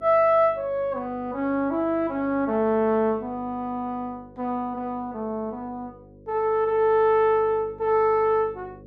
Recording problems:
hum; 50 Hz, harmonics up to 550 Hz, SNR 23 dB

